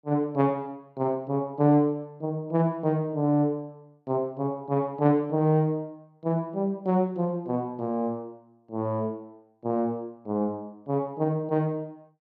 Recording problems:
none

